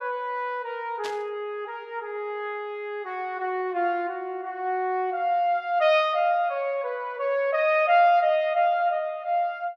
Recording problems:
static burst; at 1 s; peak -7 dB vs average level

